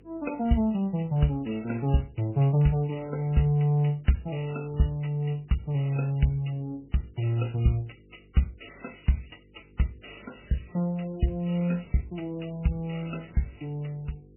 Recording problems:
lossy codec; MP3, log-spectral distance 7 dB, nothing above 2.9 kHz
hum; 50 Hz, harmonics up to 500 Hz, SNR 28 dB

